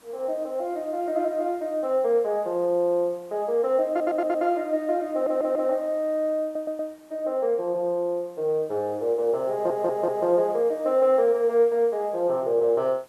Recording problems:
background hiss; slope -4 dB per octave, SNR 30 dB
audio stuttering; 4 times, first at 4 s

